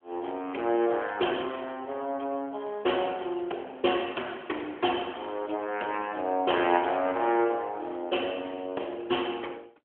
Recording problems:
telephone audio; 260 Hz to 3.3 kHz, AMR-NB

